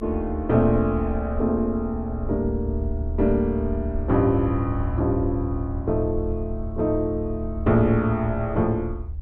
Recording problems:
low-frequency rumble; below 74 Hz, SNR 8 dB

